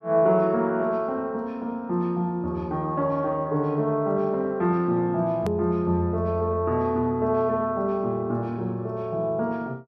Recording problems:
click at an edit; at 5.5 s

